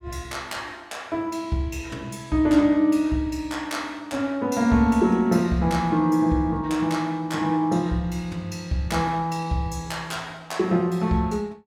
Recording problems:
none

